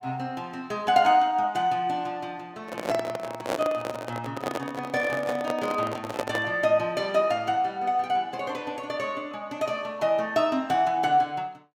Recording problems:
handling noise; from 2.5 to 6.5 s; peak +2 dB vs average level

